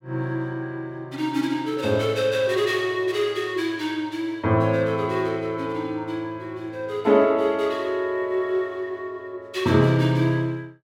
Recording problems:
none

